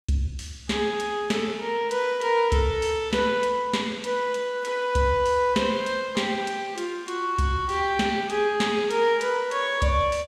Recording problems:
none

